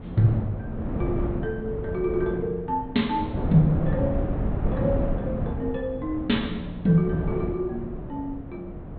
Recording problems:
treble missing; nothing above 4.1 kHz
wind on the microphone; below 280 Hz, SNR 4 dB

